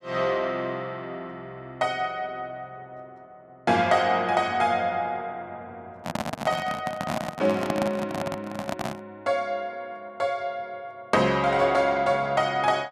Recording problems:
handling noise; from 6 to 9 s; peak +2 dB vs average level

